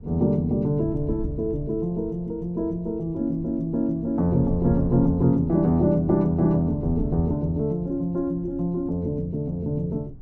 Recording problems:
wind on the microphone; below 110 Hz, SNR 14 dB

